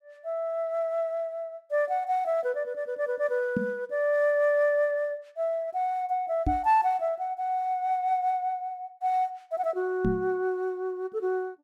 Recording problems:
knock on the microphone; at 3.5 s, at 6.5 s and at 10 s; peak +3 dB vs average level

